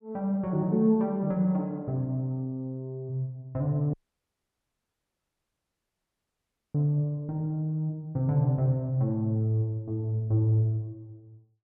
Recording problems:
dropout; at 4 s for 3 s

